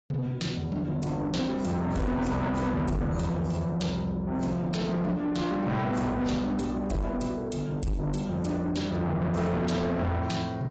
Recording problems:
lossy codec; AAC, log-spectral distance 2 dB, nothing above 7.6 kHz
distorted audio; soft clipping, signal-to-distortion ratio 7 dB

